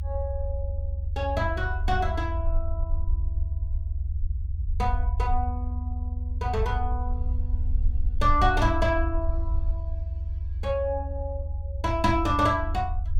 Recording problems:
low-frequency rumble; below 80 Hz, SNR 2 dB

